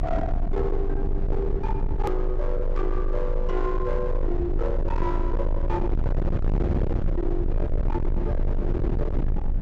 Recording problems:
treble missing; nothing above 8 kHz
distortion; hard clipping, signal-to-distortion ratio 6 dB
electrical hum; 60 Hz, harmonics up to 660 Hz, SNR 13 dB
rumble; below 76 Hz, strongest tone 26 Hz, SNR -2 dB
click at an edit; at 2 s

